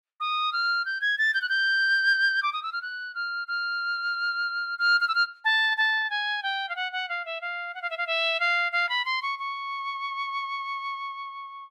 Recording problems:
none

